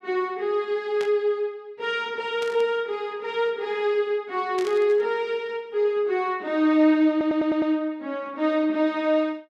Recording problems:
static burst; at 1 s, at 2.5 s and at 4.5 s; peak -9 dB vs average level
audio stuttering; at 7 s

